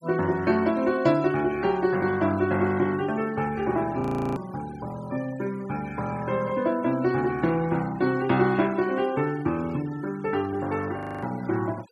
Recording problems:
noise reduction artefacts; signal-to-artefact ratio 20 dB
frozen audio; at 4 s and at 11 s

